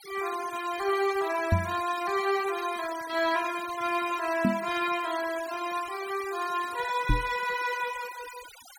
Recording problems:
denoising artefacts; signal-to-artefact ratio 14 dB
knock on the microphone; at 1.5 s, at 4.5 s and at 7 s; peak +8 dB vs average level

